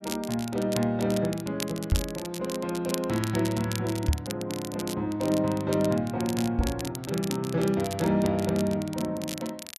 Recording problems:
crackle; vinyl, SNR 11 dB
knock on the microphone; at 2 s, at 4 s and at 6.5 s; peak +7 dB vs average level

